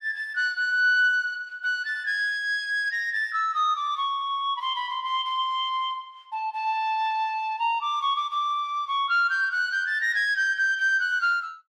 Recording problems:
none

